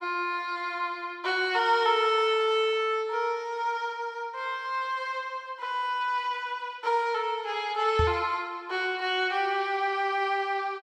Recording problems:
knock on the microphone; at 8 s; peak +3 dB vs average level

